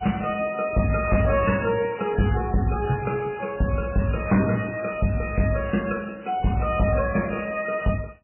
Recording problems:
codec artefacts; MP3, log-spectral distance 7 dB, nothing above 2.6 kHz
distortion; hard clipping, signal-to-distortion ratio 12 dB

